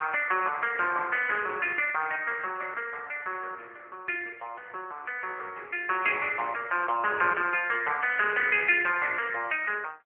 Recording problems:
telephone audio; 320 Hz to 3.3 kHz, AMR-NB

